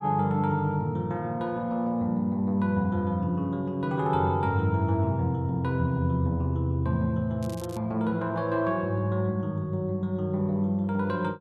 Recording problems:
crackling; at 7.5 s; loose cable, SNR 22 dB

